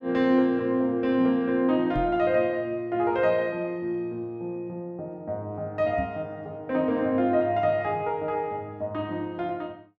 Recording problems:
microphone thump; at 2 s and at 6 s; peak -3 dB vs average level

